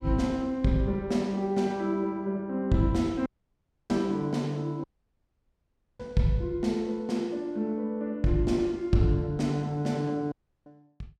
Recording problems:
audio cutting out; at 3.5 s for 0.5 s, at 5 s for 1 s and at 10 s

